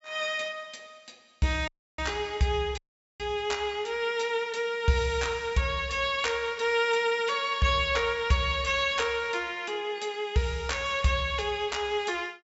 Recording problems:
treble cut off; nothing above 8 kHz
dropout; at 1.5 s and at 3 s

